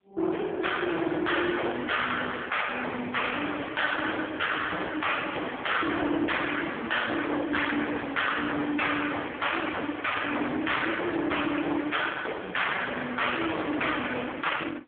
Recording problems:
phone line; 260 Hz to 3.5 kHz, AMR-NB
distortion; hard clipping, signal-to-distortion ratio 9 dB

